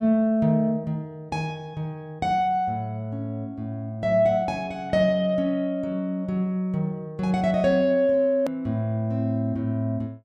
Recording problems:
edit click; at 8.5 s

